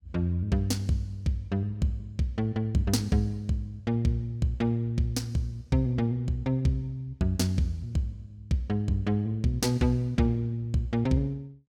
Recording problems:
none

